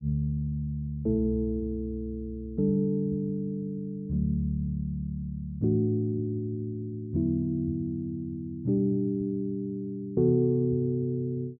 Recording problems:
none

